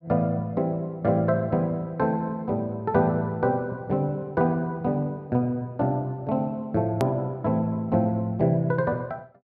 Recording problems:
edit click; at 7 s

